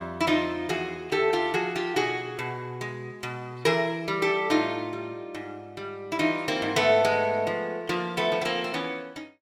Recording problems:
none

